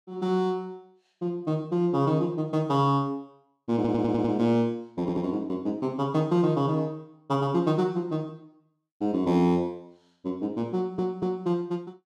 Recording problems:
stutter; at 4 s, at 5 s and at 11 s

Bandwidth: 13.5 kHz